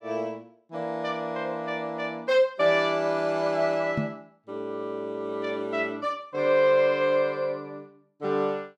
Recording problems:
microphone bump; at 4 s; peak +2 dB vs average level

